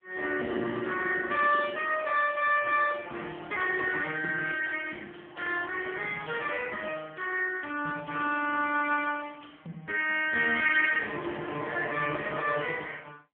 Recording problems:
telephone audio; 220 Hz to 3.3 kHz, AMR-NB

